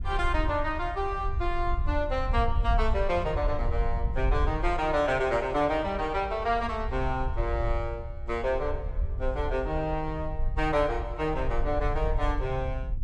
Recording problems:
wind noise; below 64 Hz, SNR 4 dB

